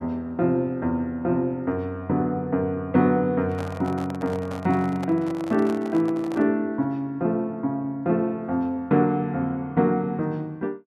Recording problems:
handling noise; from 3.5 to 6.5 s; peak -7 dB vs average level

